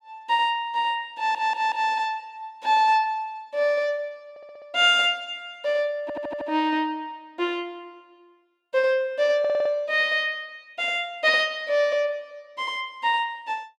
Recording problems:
audio stuttering; 4 times, first at 1 s

